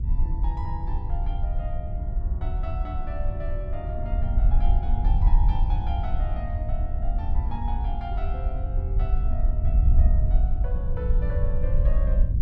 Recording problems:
low-frequency rumble; below 64 Hz, SNR -11 dB

